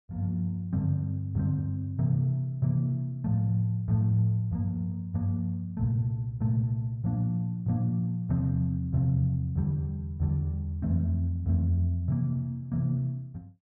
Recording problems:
none

